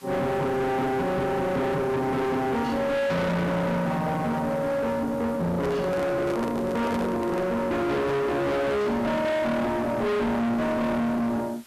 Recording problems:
distortion; hard clipping, uneven, signal-to-distortion ratio 6 dB
background hiss; slope 0 dB per octave, SNR 27 dB
handling noise; from 5.5 to 7.5 s; peak -1 dB vs average level

